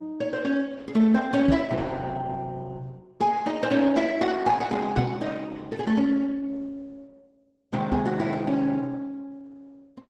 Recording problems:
lossy compression; Opus, log-spectral distance 3 dB, nothing above 10.1 kHz
microphone thump; at 1.5 s, at 5 s and at 8 s; peak +5 dB vs average level

